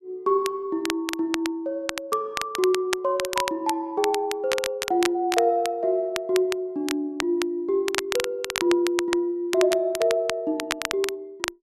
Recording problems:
crackling; vinyl, SNR 7 dB

